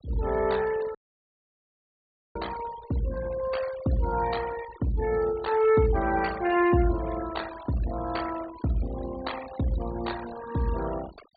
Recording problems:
treble cut off; nothing above 4.6 kHz
noise reduction artefacts; signal-to-artefact ratio 15 dB
dropout; at 1 s for 1.5 s

